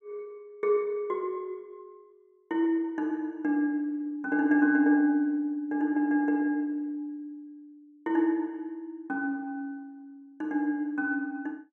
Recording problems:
none

